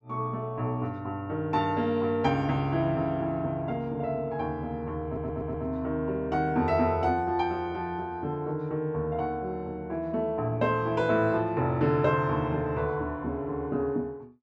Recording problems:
audio stuttering; at 5 s

